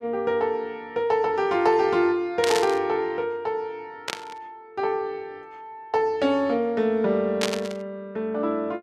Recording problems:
static burst; at 2.5 s, at 4 s and at 7.5 s; peak +3 dB vs average level

